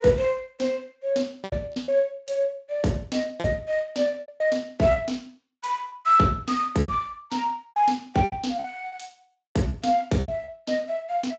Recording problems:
lossy compression; Speex, log-spectral distance 3 dB, nothing above 7.6 kHz
lost packets; 9% of the sound replaced, filled with repeated pitch periods

